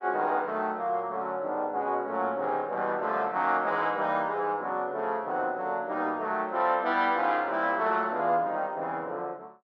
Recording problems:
none

